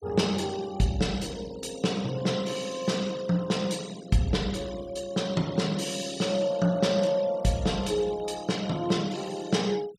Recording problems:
noise reduction artefacts; signal-to-artefact ratio 18 dB

